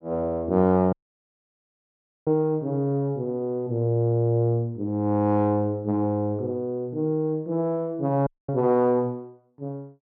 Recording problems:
dropout; at 1 s for 1.5 s and at 8.5 s

